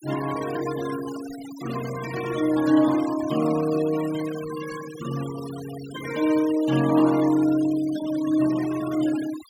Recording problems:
denoising artefacts; signal-to-artefact ratio 15 dB

